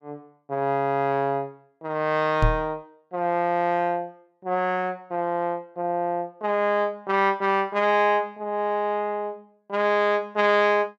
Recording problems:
microphone bump; at 2.5 s; peak +5 dB vs average level

